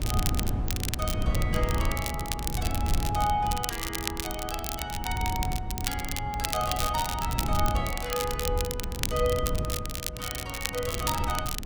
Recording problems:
wind noise; below 130 Hz, SNR 1 dB
crackling; vinyl, SNR 2 dB

